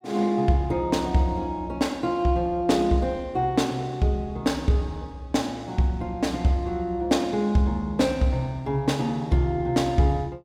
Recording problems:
none

